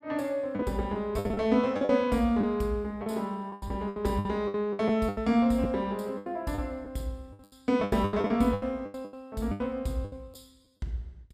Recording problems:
lost packets; 15% of the sound replaced, filled with the last packet

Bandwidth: 14.5 kHz